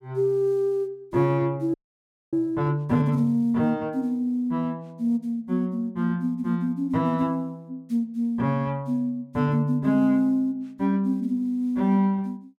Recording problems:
audio freezing; at 1.5 s for 0.5 s

